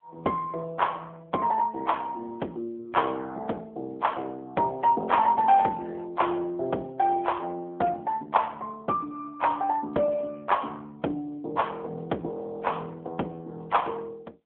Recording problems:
telephone audio; 220 Hz to 3.8 kHz, AMR-NB

